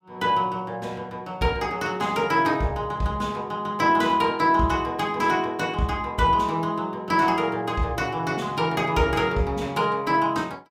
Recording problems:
none

